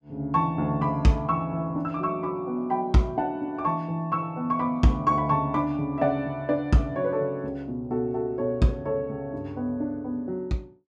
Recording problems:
none

